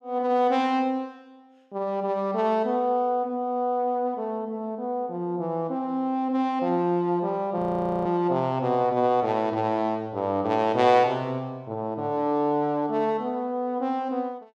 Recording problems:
audio freezing; at 7.5 s

